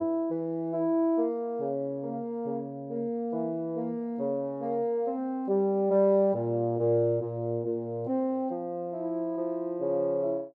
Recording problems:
none

